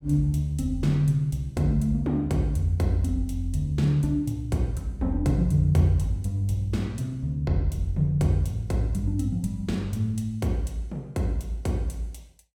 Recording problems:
none

